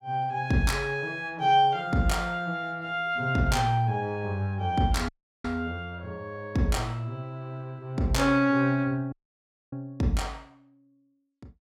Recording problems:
dropout; at 5 s and at 9 s for 0.5 s

